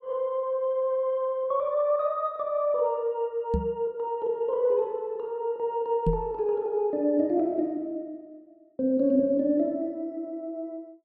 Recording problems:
microphone thump; at 3.5 s and at 6 s; peak +4 dB vs average level

